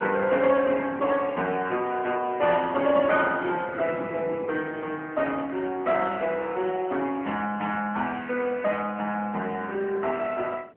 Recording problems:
telephone audio; 240 Hz to 3.1 kHz, AMR-NB
wind on the microphone; below 430 Hz, SNR 15 dB

